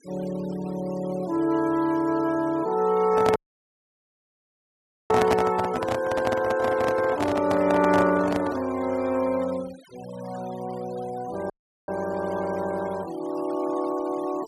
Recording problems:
denoising artefacts; signal-to-artefact ratio 20 dB
handling noise; from 3 to 8.5 s; peak +4 dB vs average level
dropout; at 3.5 s for 1.5 s and at 12 s

